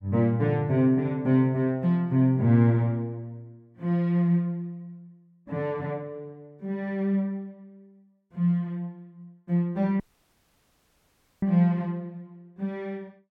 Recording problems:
audio cutting out; at 10 s for 1.5 s

